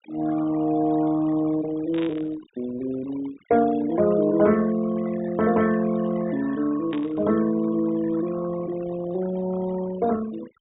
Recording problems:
treble cut off; nothing above 4 kHz
denoising artefacts; signal-to-artefact ratio 17 dB
static burst; at 2 s and at 7 s; peak -9 dB vs average level

